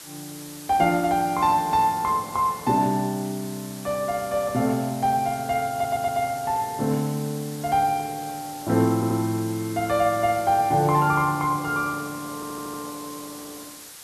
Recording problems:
background hiss; slope +1 dB per octave, SNR 16 dB
stutter; at 5.5 s, at 9 s and at 12 s

